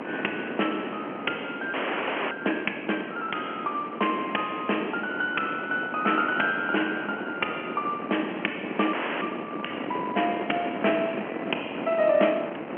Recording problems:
phone line; 220 Hz to 3.1 kHz, G.711
wind noise; below 920 Hz, SNR 7 dB
frozen audio; at 1.5 s for 0.5 s and at 9 s

